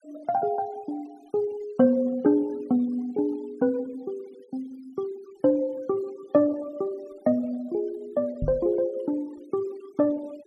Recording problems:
denoising artefacts; signal-to-artefact ratio 27 dB
microphone thump; at 8.5 s; peak 0 dB vs average level

